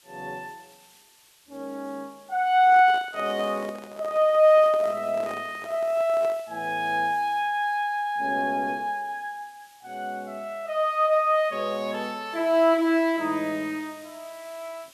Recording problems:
background hiss; slope +2 dB per octave, SNR 28 dB
microphone handling noise; from 2.5 to 6.5 s; peak -11 dB vs average level

